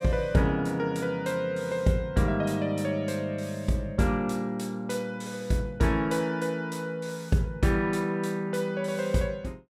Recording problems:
none

